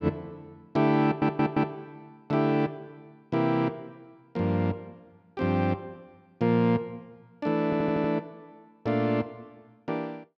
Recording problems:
stutter; at 1 s and at 7.5 s

